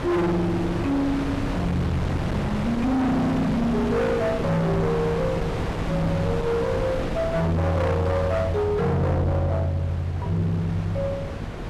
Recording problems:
distorted audio; hard clipping, uneven, signal-to-distortion ratio 6 dB
hum; 50 Hz, harmonics up to 550 Hz, SNR 15 dB
wind noise; below 730 Hz, SNR 6 dB

